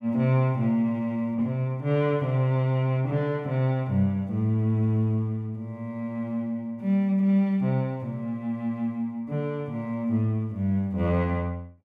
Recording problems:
none

